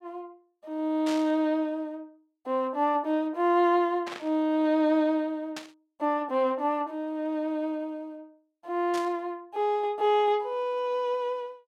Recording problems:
static burst; 4 times, first at 1 s; peak -7 dB vs average level

